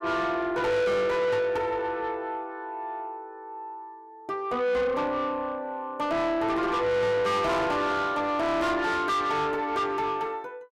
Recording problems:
distortion; soft clipping, signal-to-distortion ratio 7 dB

